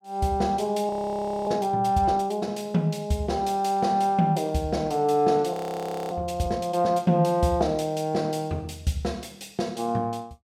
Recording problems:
frozen audio; at 1 s for 0.5 s and at 5.5 s for 0.5 s

